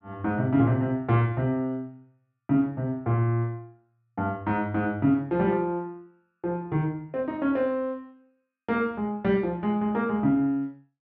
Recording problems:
none

